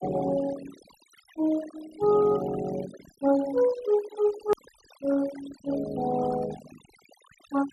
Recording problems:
denoising artefacts; signal-to-artefact ratio 17 dB
edit click; at 4.5 s

